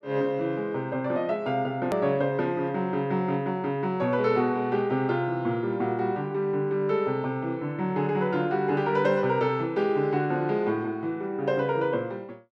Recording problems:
click at an edit; at 2 s

